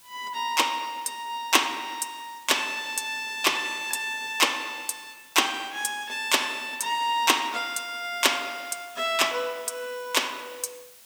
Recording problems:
hiss; slope +1 dB per octave, SNR 23 dB

